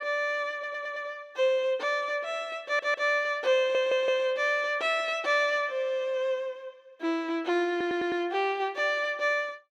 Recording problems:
stutter; 4 times, first at 0.5 s

